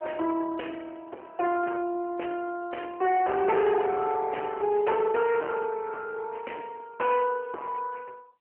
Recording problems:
phone line; 280 Hz to 3 kHz, AMR-NB
distorted audio; hard clipping, uneven, signal-to-distortion ratio 8 dB

